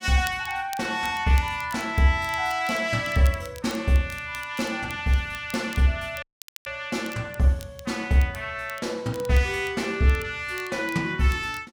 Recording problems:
crackling; vinyl, SNR 21 dB
dropout; at 6 s

